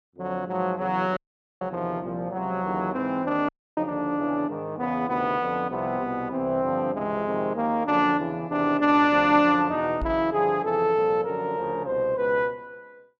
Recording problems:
audio cutting out; at 1 s and at 3.5 s
microphone bump; at 10 s; peak -4 dB vs average level

